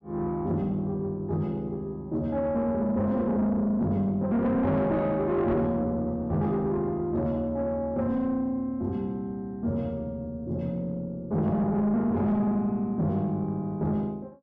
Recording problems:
distortion; soft clipping, signal-to-distortion ratio 10 dB

